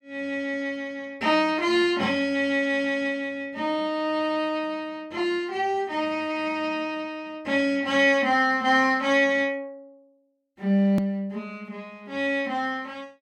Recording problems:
hard cut with a click; at 11 s

